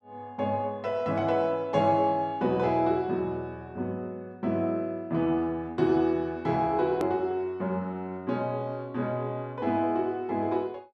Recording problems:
hard cut with a click; at 7 s

